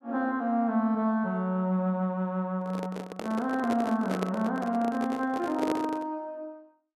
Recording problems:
microphone handling noise; from 2.5 to 6 s; peak +2 dB vs average level

